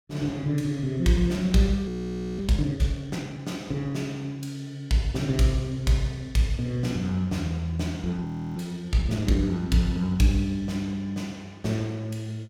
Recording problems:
audio freezing; at 2 s for 0.5 s and at 8.5 s

